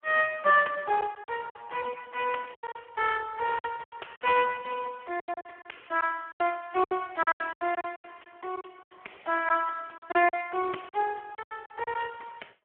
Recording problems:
telephone audio; 300 Hz to 2.9 kHz, Speex
packet loss; 13% of the sound replaced, filled with silence

